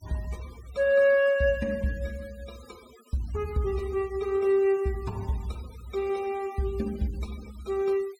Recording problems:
denoising artefacts; signal-to-artefact ratio 24 dB

